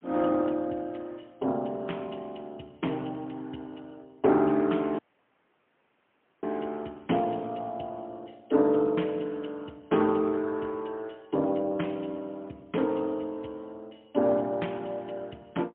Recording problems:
telephone audio; 170 Hz to 3.3 kHz, AMR-NB, then MP3
dropout; at 5 s for 1.5 s

